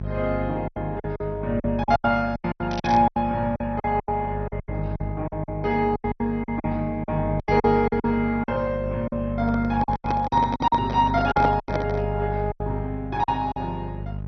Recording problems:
lossy compression; MP2, log-spectral distance 2 dB, nothing above 5 kHz
hum; 50 Hz, harmonics up to 650 Hz, SNR 8 dB
packet loss; 15% of the sound replaced, filled with silence
crackling; at 2.5 s; loose cable, SNR 16 dB
handling noise; from 9.5 to 12 s; peak +3 dB vs average level

